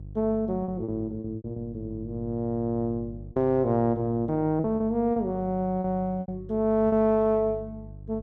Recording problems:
mains hum; 50 Hz, harmonics up to 350 Hz, SNR 17 dB
lost packets; 7% of the sound replaced, filled with repeated pitch periods

